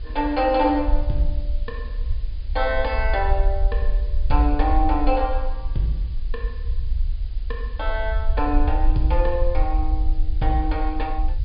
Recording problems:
low-pass filter; nothing above 5 kHz
background hiss; SNR 27 dB
low-frequency rumble; below 52 Hz, SNR 2 dB

